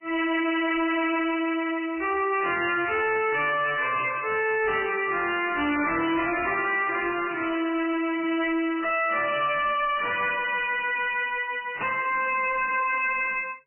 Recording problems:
codec artefacts; MP3, log-spectral distance 7 dB, nothing above 2.4 kHz
distorted audio; soft clipping, signal-to-distortion ratio 6 dB

